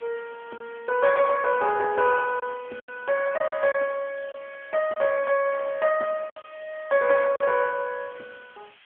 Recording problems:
telephone audio; 300 Hz to 2.5 kHz, AMR-NB
hiss; SNR 27 dB
lost packets; 4% of the sound replaced, filled with silence

